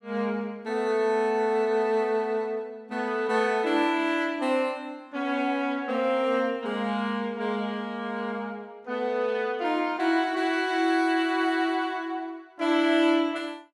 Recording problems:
none

